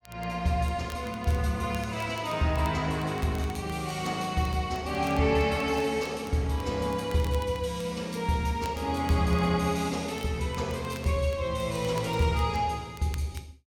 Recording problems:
crackling; vinyl, SNR 23 dB

